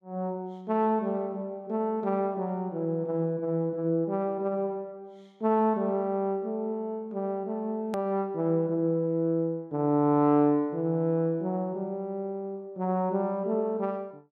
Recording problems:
click at an edit; at 8 s

